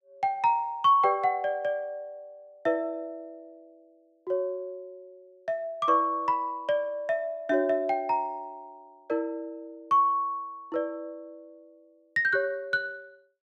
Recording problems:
none

